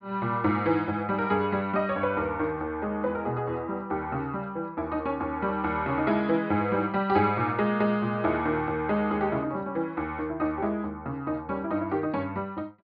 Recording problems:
low-pass filter; nothing above 5.2 kHz

